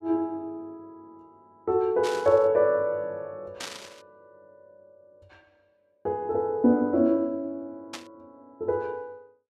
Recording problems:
burst of static; at 2 s, at 3.5 s and at 8 s; peak -6 dB vs average level

